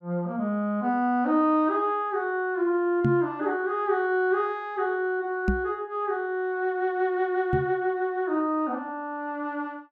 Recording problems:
knock on the microphone; at 3 s, at 5.5 s and at 7.5 s; peak +5 dB vs average level

